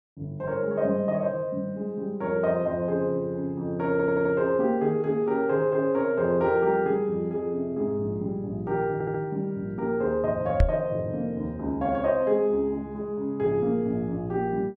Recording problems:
audio stuttering; at 4 s and at 9 s
microphone thump; at 11 s; peak +8 dB vs average level

